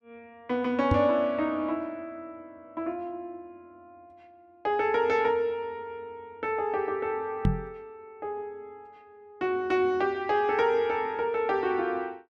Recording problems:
microphone bump; at 1 s and at 7.5 s; peak +6 dB vs average level

